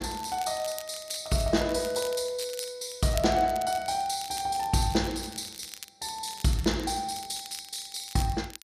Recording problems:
crackle; vinyl, SNR 14 dB

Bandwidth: 14.5 kHz